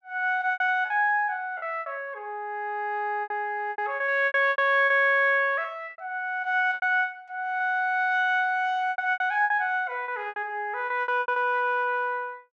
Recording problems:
packet loss; 12% of the sound replaced, filled with repeated pitch periods

